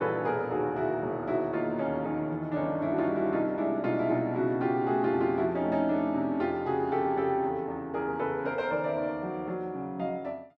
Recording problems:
none

